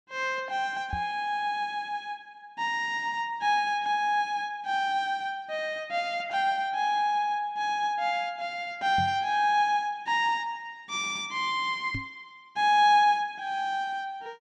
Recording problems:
microphone bump; at 1 s, at 9 s and at 12 s; peak -4 dB vs average level

